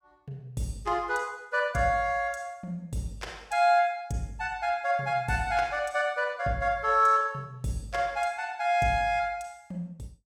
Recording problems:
none

